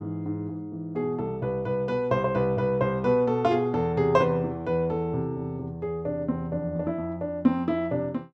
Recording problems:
none

